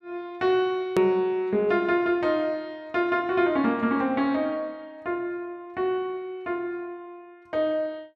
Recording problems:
hard cut with a click; at 1 s

